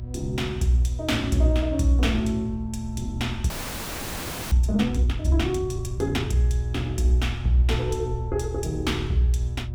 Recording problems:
electrical hum; 60 Hz, harmonics up to 600 Hz, SNR 11 dB
rumble; below 80 Hz, SNR 10 dB
frozen audio; at 3.5 s for 1 s

